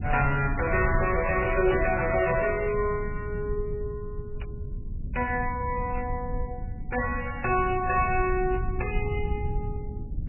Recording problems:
lossy compression; MP3, log-spectral distance 4 dB, nothing above 2.6 kHz
rumble; below 100 Hz, SNR 7 dB
burst of static; 4 times, first at 1 s; peak -10 dB vs average level

